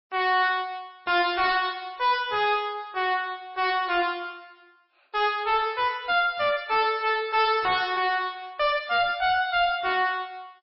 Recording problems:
lossy compression; MP3, log-spectral distance 3 dB, nothing above 5.3 kHz
distortion; soft clipping, signal-to-distortion ratio 6 dB

